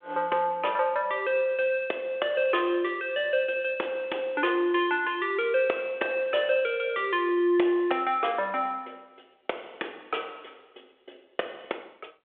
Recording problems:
phone line; 300 Hz to 3.5 kHz, G.726

